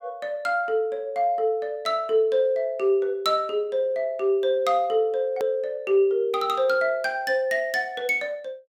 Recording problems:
edit click; at 5.5 s

